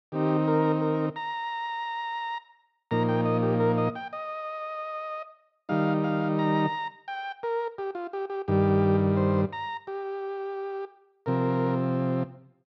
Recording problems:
none

